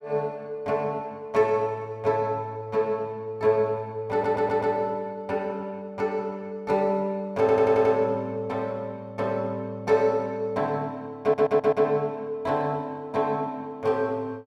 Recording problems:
audio stuttering; at 4 s, at 7.5 s and at 11 s

